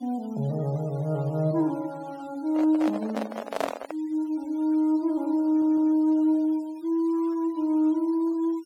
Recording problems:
noise reduction artefacts; signal-to-artefact ratio 26 dB
handling noise; from 2.5 to 4 s; peak +1 dB vs average level
audio stuttering; at 5.5 s

